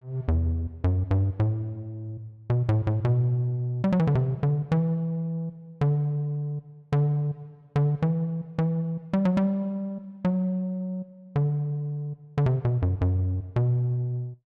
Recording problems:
none

